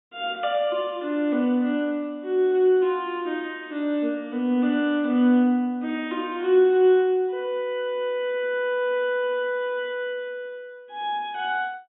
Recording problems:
treble missing; nothing above 4 kHz

